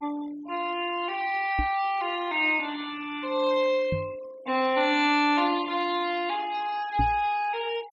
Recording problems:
noise reduction artefacts; signal-to-artefact ratio 20 dB
microphone bump; at 1.5 s, at 4 s and at 7 s; peak +1 dB vs average level

